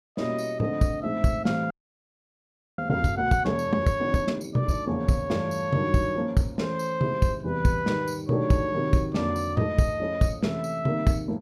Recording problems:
audio freezing; at 1.5 s for 1 s

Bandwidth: 16.5 kHz